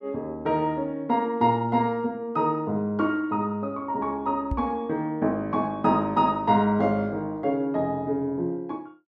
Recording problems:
knock on the microphone; at 4.5 s; peak -1 dB vs average level

